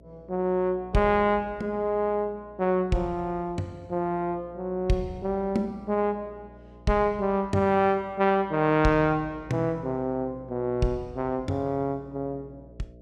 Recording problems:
electrical hum; 60 Hz, harmonics up to 660 Hz, SNR 23 dB

